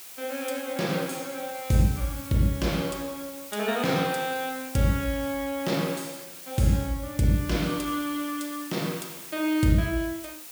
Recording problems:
background hiss; slope +1 dB per octave, SNR 13 dB

